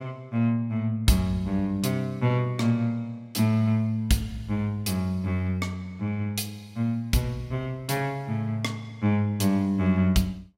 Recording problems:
none

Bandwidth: 16 kHz